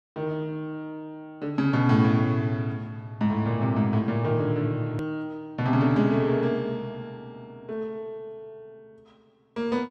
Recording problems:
click at an edit; at 5 s

